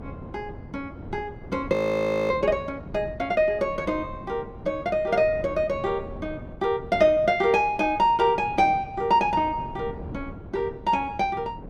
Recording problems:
wind noise; below 340 Hz, SNR 16 dB
frozen audio; at 1.5 s for 0.5 s

